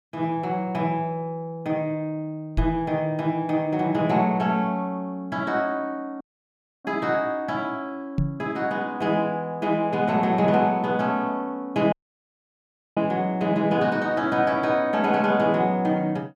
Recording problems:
knock on the microphone; at 2.5 s and at 8 s; peak +3 dB vs average level
dropout; at 6 s for 0.5 s and at 12 s for 1 s

